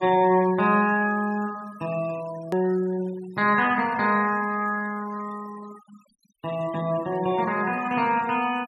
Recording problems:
noise reduction artefacts; signal-to-artefact ratio 21 dB
edit click; at 2.5 s

